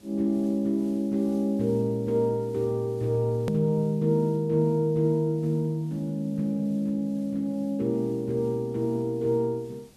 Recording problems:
background hiss; SNR 29 dB
hard cut with a click; at 3.5 s

